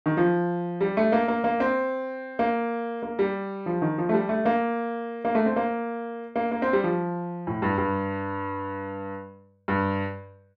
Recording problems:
none

